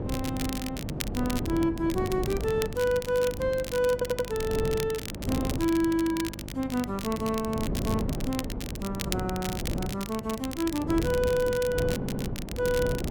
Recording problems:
hum; 50 Hz, harmonics up to 1.3 kHz, SNR 14 dB
wind noise; below 320 Hz, SNR 6 dB
crackling; vinyl, SNR 10 dB
audio stuttering; at 4 s and at 12 s

